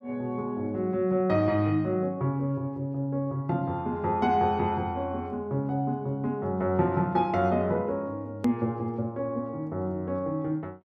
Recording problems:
click at an edit; at 8.5 s

